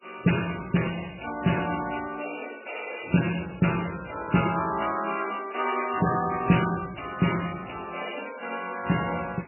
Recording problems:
lossy compression; AAC, then MP3, log-spectral distance 14 dB, nothing above 2.9 kHz

